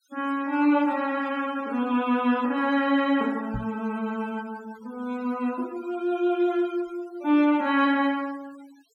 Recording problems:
noise reduction artefacts; signal-to-artefact ratio 24 dB
microphone thump; at 3.5 s; peak -4 dB vs average level

